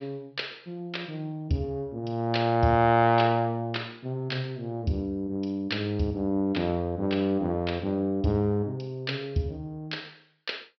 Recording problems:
treble cut off; nothing above 5.5 kHz

